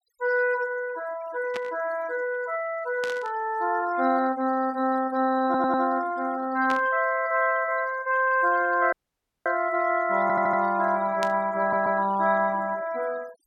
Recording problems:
noise reduction artefacts; signal-to-artefact ratio 21 dB
static burst; 4 times, first at 1.5 s; peak -5 dB vs average level
audio stuttering; at 5.5 s, at 10 s and at 12 s
audio cutting out; at 9 s for 0.5 s

